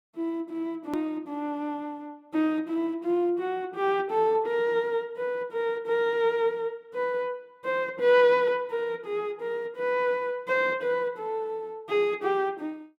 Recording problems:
edit click; at 1 s

